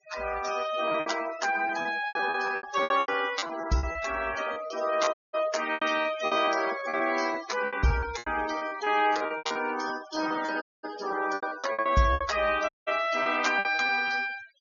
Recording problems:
low-pass filter; nothing above 6.8 kHz
denoising artefacts; signal-to-artefact ratio 12 dB
packet loss; 15% of the sound replaced, filled with repeated pitch periods
audio cutting out; at 5 s, at 11 s and at 13 s

